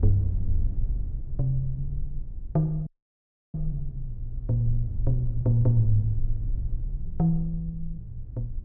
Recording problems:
rumble; below 50 Hz, strongest tone 22 Hz, SNR 7 dB
dropout; at 3 s for 0.5 s

